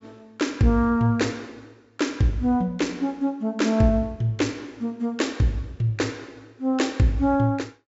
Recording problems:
treble missing; nothing above 8 kHz

